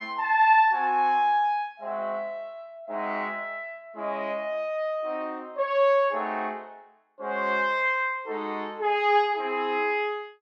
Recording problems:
none

